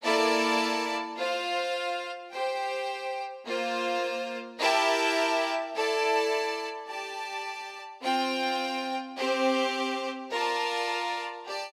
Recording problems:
none

